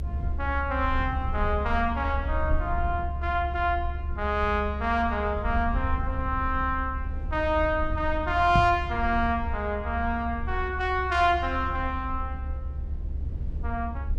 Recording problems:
rumble; below 72 Hz, SNR 5 dB
knock on the microphone; at 8.5 s; peak +5 dB vs average level

